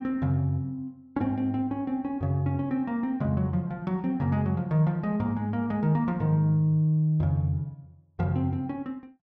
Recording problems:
none

